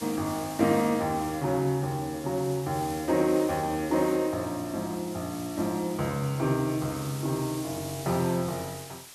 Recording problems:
background hiss; slope +1 dB per octave, SNR 14 dB

